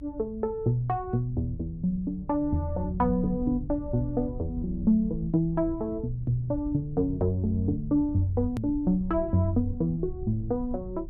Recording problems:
rumble; below 90 Hz, SNR 13 dB
hard cut with a click; at 8.5 s

